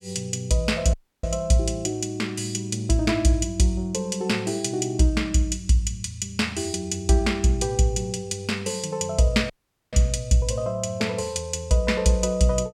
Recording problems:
dropout; at 1 s and at 9.5 s

